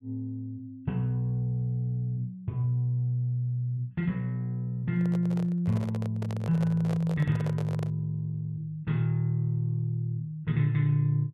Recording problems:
microphone handling noise; from 5 to 8 s; peak -6 dB vs average level

